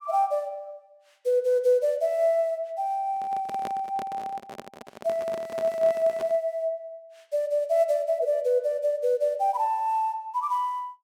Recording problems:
microphone handling noise; from 3 to 6.5 s; peak -6 dB vs average level

